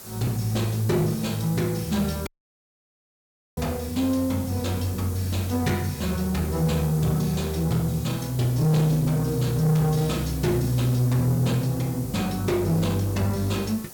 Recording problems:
distortion; soft clipping, signal-to-distortion ratio 11 dB
background hiss; SNR 15 dB
dropout; at 2.5 s for 1.5 s

